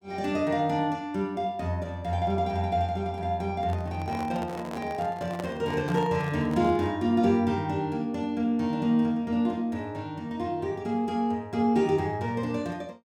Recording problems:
handling noise; from 3.5 to 7 s; peak -5 dB vs average level

